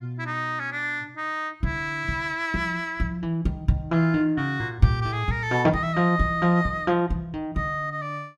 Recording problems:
none

